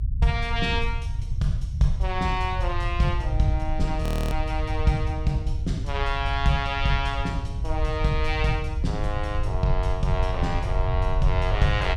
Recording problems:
low-frequency rumble; below 86 Hz, SNR 1 dB
frozen audio; at 4 s

